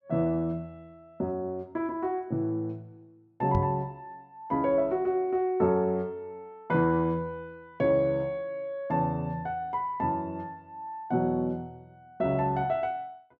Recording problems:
knock on the microphone; at 3.5 s; peak +4 dB vs average level

